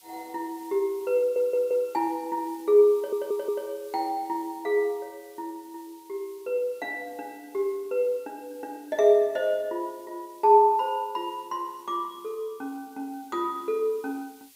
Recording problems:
background hiss; SNR 27 dB
audio stuttering; at 1 s and at 3 s

